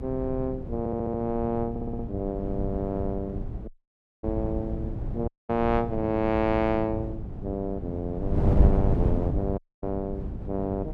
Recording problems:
hum; 60 Hz, harmonics up to 420 Hz, SNR 16 dB
wind on the microphone; below 160 Hz, SNR 2 dB
audio stuttering; at 1 s and at 1.5 s
audio cutting out; at 3.5 s for 0.5 s, at 5.5 s and at 9.5 s

